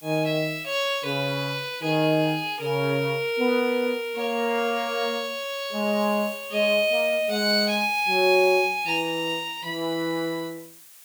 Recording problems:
background hiss; slope +2 dB per octave, SNR 20 dB

